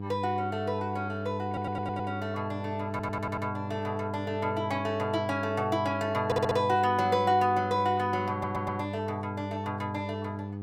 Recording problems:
mains hum; 50 Hz, harmonics up to 800 Hz, SNR 7 dB
audio stuttering; 4 times, first at 1.5 s

